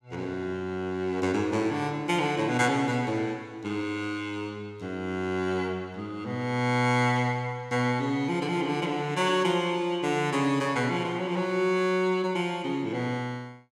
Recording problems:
none

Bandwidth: 17.5 kHz